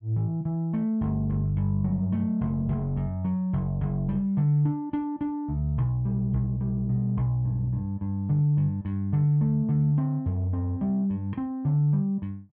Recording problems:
none

